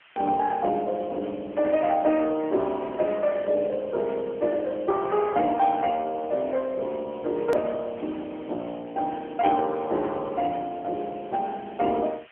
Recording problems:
phone line; 260 Hz to 3.2 kHz, AMR-NB
hiss; SNR 27 dB
edit click; at 7.5 s

